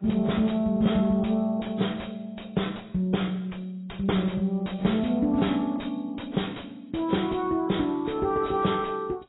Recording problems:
lossy codec; AAC, log-spectral distance 5 dB, nothing above 3.8 kHz
distorted audio; soft clipping, signal-to-distortion ratio 9 dB

